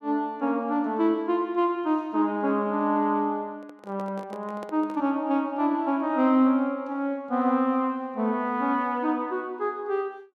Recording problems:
microphone handling noise; from 3.5 to 5 s; peak -11 dB vs average level

